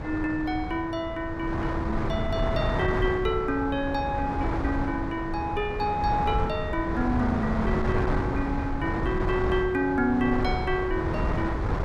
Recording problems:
wind on the microphone; below 560 Hz, SNR 2 dB

